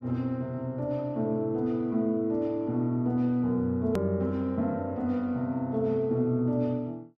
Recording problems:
edit click; at 4 s

